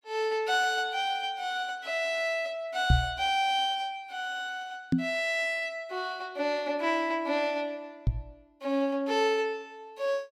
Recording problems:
knock on the microphone; at 3 s, at 5 s and at 8 s; peak +9 dB vs average level

